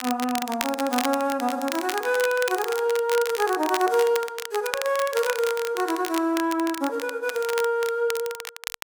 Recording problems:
crackle; vinyl, SNR 9 dB

